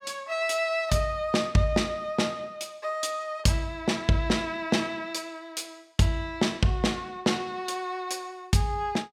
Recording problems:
none

